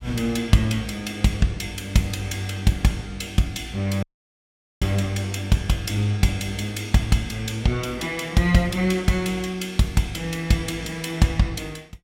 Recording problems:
dropout; at 4 s for 1 s

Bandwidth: 16 kHz